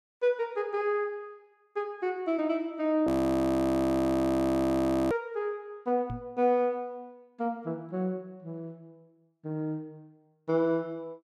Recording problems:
audio freezing; at 3 s for 2 s
knock on the microphone; at 6 s; peak -4 dB vs average level

